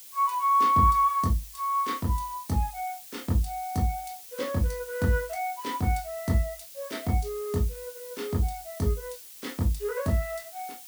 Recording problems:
hiss; SNR 15 dB

